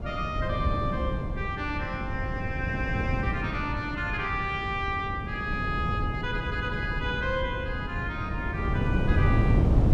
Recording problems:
wind noise; below 200 Hz, SNR -1 dB

